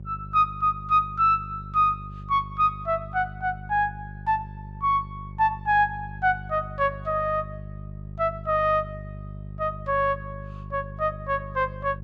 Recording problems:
hum; 50 Hz, harmonics up to 400 Hz, SNR 14 dB

